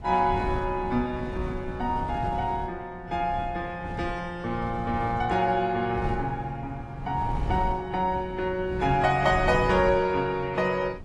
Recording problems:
lossy codec; AAC, log-spectral distance 2 dB
wind on the microphone; below 200 Hz, SNR 10 dB

